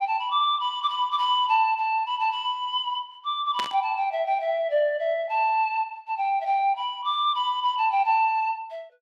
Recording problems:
static burst; at 3.5 s; peak -3 dB vs average level

